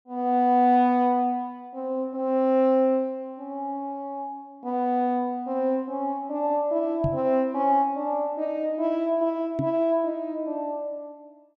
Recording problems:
microphone bump; at 7 s and at 9.5 s; peak +1 dB vs average level

